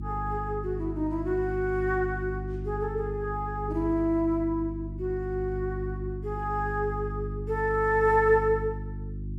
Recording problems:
hum; 50 Hz, harmonics up to 350 Hz, SNR 7 dB

